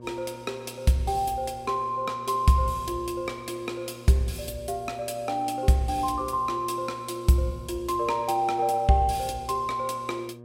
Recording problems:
hum; 60 Hz, harmonics up to 1.2 kHz, SNR 18 dB

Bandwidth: 16 kHz